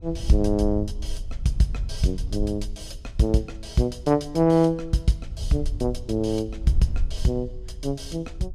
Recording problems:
wind on the microphone; below 66 Hz, SNR 8 dB

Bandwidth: 14.5 kHz